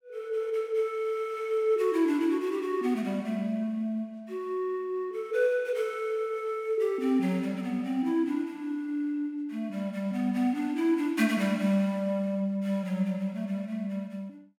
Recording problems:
none

